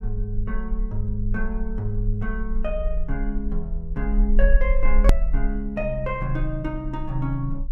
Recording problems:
rumble; below 42 Hz, SNR -1 dB
edit click; at 5 s

